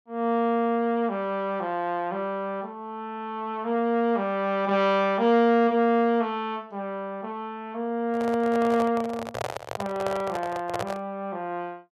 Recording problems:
handling noise; from 8 to 11 s; peak -1 dB vs average level

